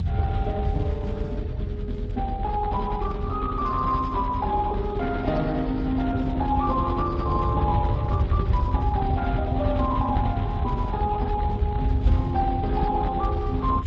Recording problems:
lossy compression; Speex, log-spectral distance 2 dB
low-frequency rumble; below 120 Hz, SNR 1 dB

